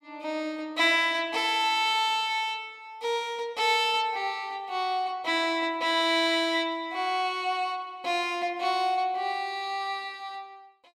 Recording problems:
none

